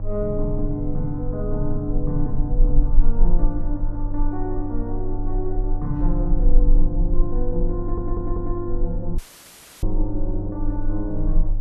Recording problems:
hum; 50 Hz, harmonics up to 800 Hz, SNR 6 dB
rumble; below 32 Hz, strongest tone 18 Hz, SNR -2 dB
audio stuttering; at 8 s
dropout; at 9 s for 0.5 s; filled with static

